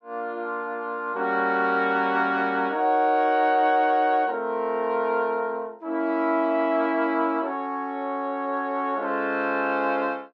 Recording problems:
none

